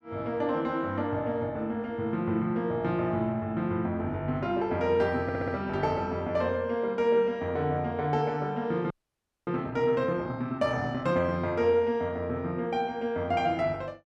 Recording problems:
audio stuttering; at 5 s
frozen audio; at 9 s for 0.5 s

